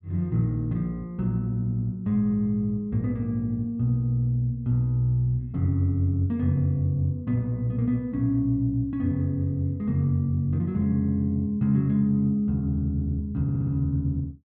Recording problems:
stutter; at 13 s

